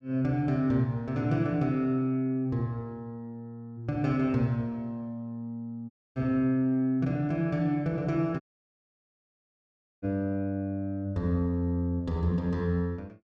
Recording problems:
dropout; at 6 s and at 8.5 s for 1.5 s

